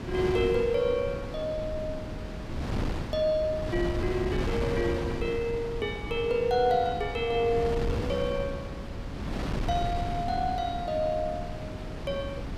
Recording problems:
wind noise; below 370 Hz, SNR 5 dB

